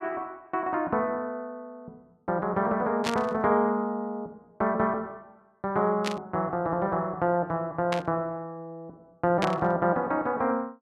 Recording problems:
static burst; 4 times, first at 3 s; peak +2 dB vs average level

